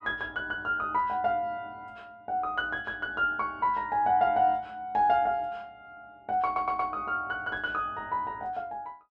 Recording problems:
audio stuttering; at 6.5 s

